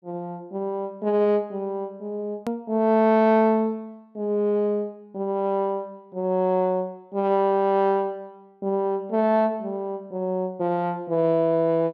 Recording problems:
click at an edit; at 2.5 s

